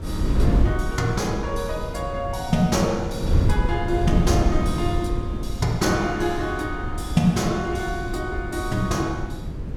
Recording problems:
wind noise; below 150 Hz, SNR 2 dB

